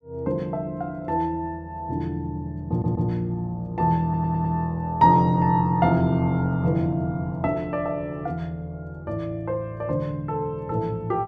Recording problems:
stutter; at 2.5 s and at 4 s

